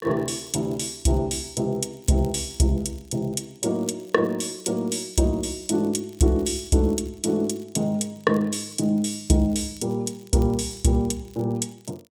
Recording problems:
crackle; vinyl, SNR 29 dB

